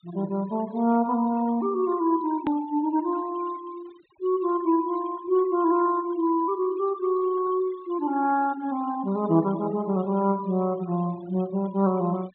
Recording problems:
treble missing; nothing above 4 kHz
noise reduction artefacts; signal-to-artefact ratio 23 dB
hard cut with a click; at 2.5 s

